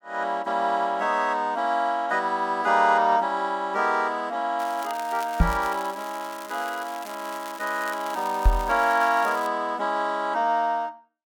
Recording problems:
crackling; from 4.5 to 9.5 s; loose cable, SNR 17 dB
microphone thump; at 5.5 s and at 8.5 s; peak +8 dB vs average level

